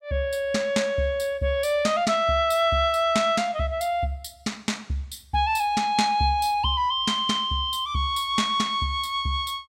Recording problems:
none

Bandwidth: 16.5 kHz